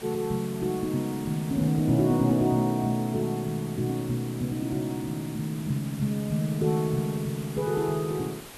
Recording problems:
hiss; slope -3 dB per octave, SNR 16 dB

